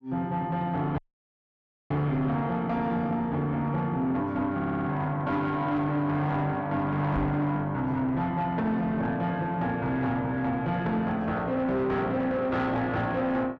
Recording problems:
distortion; soft clipping, signal-to-distortion ratio 10 dB
dropout; at 1 s for 1 s
stutter; at 4.5 s
microphone bump; at 7 s; peak +2 dB vs average level

